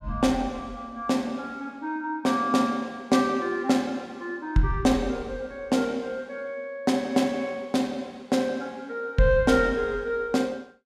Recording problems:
none

